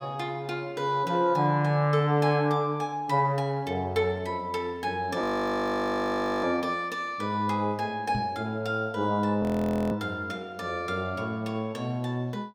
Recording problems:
audio freezing; at 5 s for 1 s and at 9.5 s
microphone thump; at 8 s; peak -1 dB vs average level

